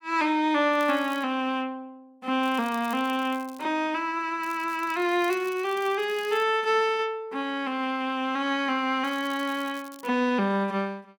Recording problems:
crackle; 4 times, first at 0.5 s; loose cable, SNR 22 dB

